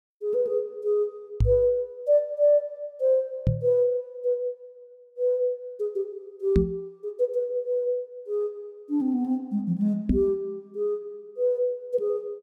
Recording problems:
knock on the microphone; 4 times, first at 1.5 s; peak +7 dB vs average level

